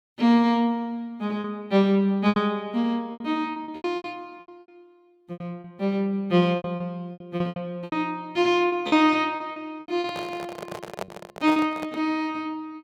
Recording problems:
lost packets; 12% of the sound replaced, filled with repeated pitch periods
microphone handling noise; from 10 to 12 s; peak -3 dB vs average level

